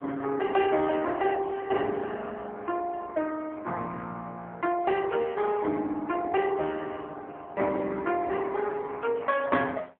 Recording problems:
telephone audio; 260 Hz to 3.4 kHz, AMR-NB

